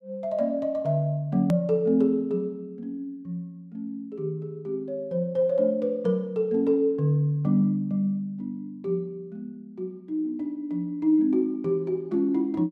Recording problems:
hard cut with a click; at 1.5 s

